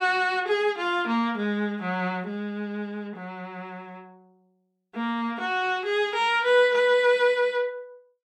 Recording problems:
none

